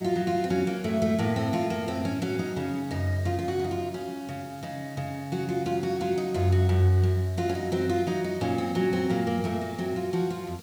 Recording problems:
background hiss; SNR 24 dB

